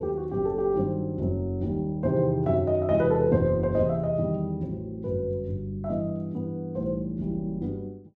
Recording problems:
none

